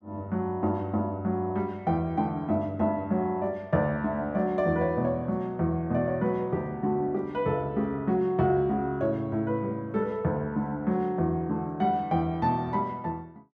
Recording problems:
none

